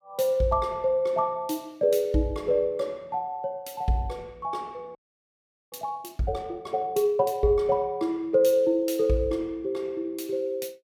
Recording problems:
frozen audio; at 5 s for 1 s

